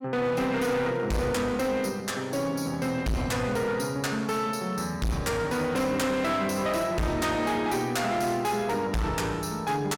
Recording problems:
distortion; hard clipping, uneven, signal-to-distortion ratio 6 dB

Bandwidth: 17.5 kHz